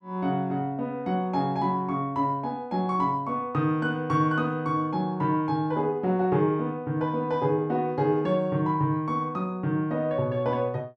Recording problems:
none

